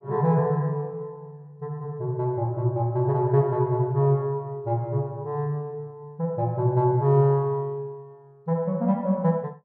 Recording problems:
none

